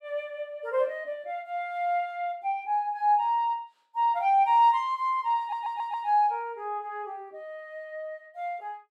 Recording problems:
audio stuttering; at 5.5 s

